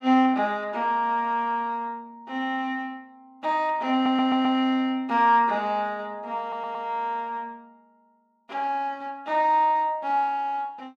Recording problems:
stutter; at 4 s and at 6.5 s

